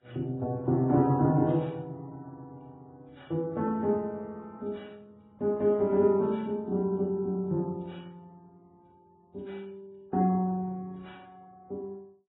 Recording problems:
lossy codec; Vorbis, then AAC, log-spectral distance 2 dB, nothing above 3.8 kHz

